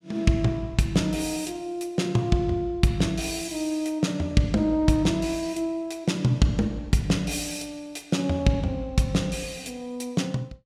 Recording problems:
none

